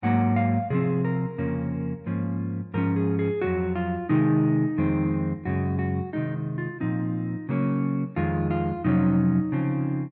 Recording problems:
none

